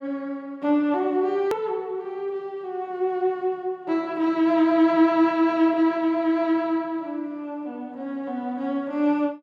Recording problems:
edit click; at 1.5 s

